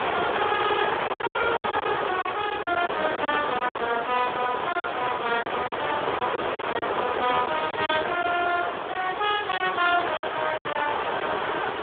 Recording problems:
phone line; 320 Hz to 3.4 kHz, Speex
hiss; SNR 3 dB
wind on the microphone; below 1.3 kHz, SNR 6 dB
packet loss; 9% of the sound replaced, filled with silence

